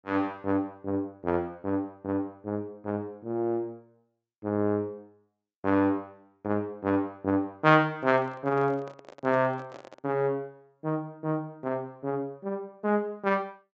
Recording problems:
treble cut off; nothing above 8 kHz
handling noise; from 8 to 10 s; peak -12 dB vs average level

